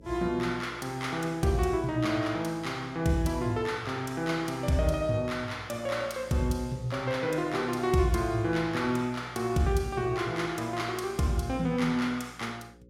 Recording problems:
hum; 60 Hz, harmonics up to 540 Hz, SNR 24 dB

